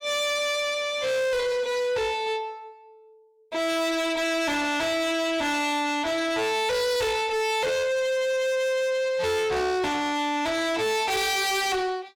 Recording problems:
distorted audio; soft clipping, signal-to-distortion ratio 6 dB

